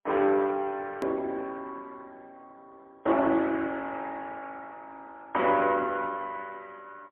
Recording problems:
phone line; 260 Hz to 3.4 kHz, AMR-NB, then MP3
click at an edit; at 1 s

